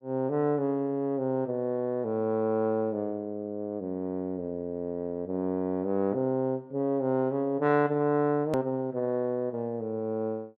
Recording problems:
edit click; at 8.5 s

